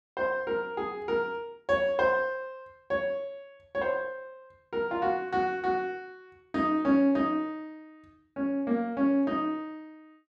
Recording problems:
none

